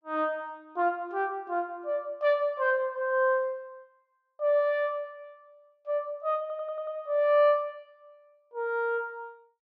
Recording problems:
stutter; at 6.5 s

